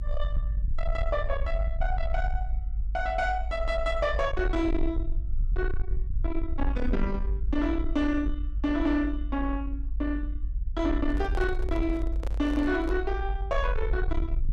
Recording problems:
distorted audio; soft clipping, signal-to-distortion ratio 11 dB
rumble; below 52 Hz, SNR 2 dB
microphone handling noise; from 11 to 13 s; peak -5 dB vs average level

